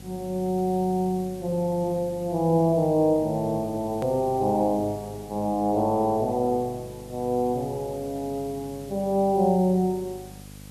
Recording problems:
mains hum; 50 Hz, harmonics up to 1.1 kHz, SNR 19 dB
hiss; slope +1 dB per octave, SNR 24 dB
hard cut with a click; at 4 s

